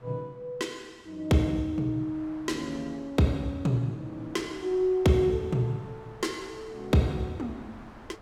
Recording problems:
wind noise; below 1.2 kHz, SNR 22 dB

